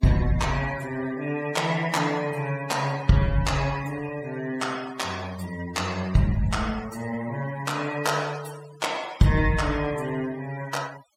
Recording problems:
noise reduction artefacts; signal-to-artefact ratio 17 dB

